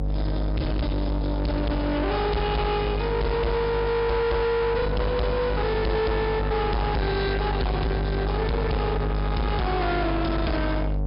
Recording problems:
treble cut off; nothing above 5.5 kHz
distorted audio; soft clipping, signal-to-distortion ratio 6 dB
electrical hum; 50 Hz, harmonics up to 1.4 kHz, SNR 2 dB

